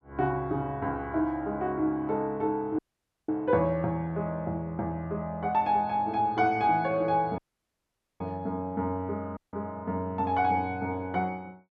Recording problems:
dropout; at 3 s, at 7.5 s for 1 s and at 9.5 s

